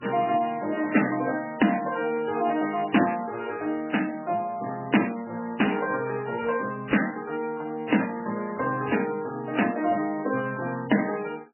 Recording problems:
lossy compression; MP3, then MP3, log-spectral distance 4 dB, nothing above 2.9 kHz

